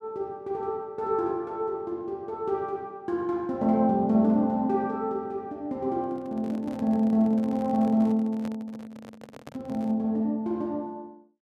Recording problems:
microphone handling noise; from 6 to 10 s; peak -9 dB vs average level

